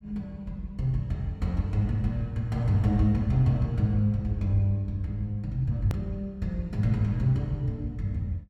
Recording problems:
click at an edit; at 6 s

